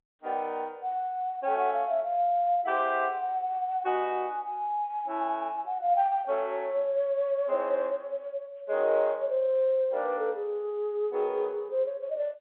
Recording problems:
telephone audio; 320 Hz to 3.5 kHz, G.711

